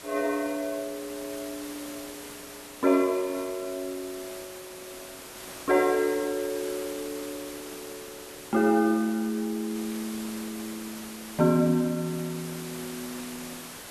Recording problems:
background hiss; slope -2 dB per octave, SNR 12 dB

